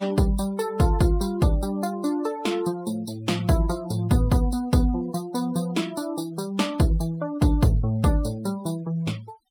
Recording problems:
denoising artefacts; signal-to-artefact ratio 23 dB

